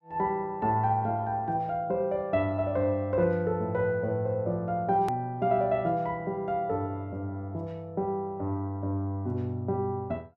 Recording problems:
edit click; at 5 s

